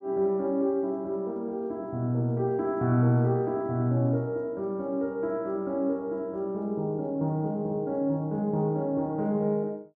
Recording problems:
none

